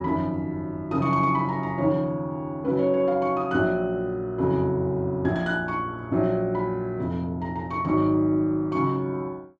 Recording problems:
none

